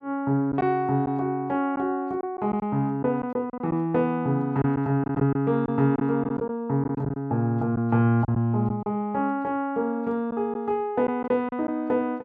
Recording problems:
packet loss; 5% of the sound replaced, filled with silence

